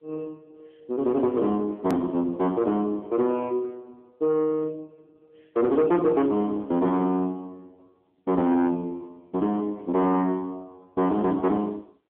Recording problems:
phone line; 190 Hz to 2.6 kHz, AMR-NB
distortion; soft clipping, signal-to-distortion ratio 11 dB
click at an edit; at 2 s

